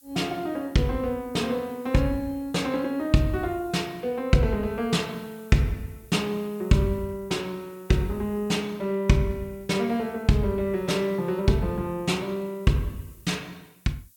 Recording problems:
hiss; SNR 27 dB

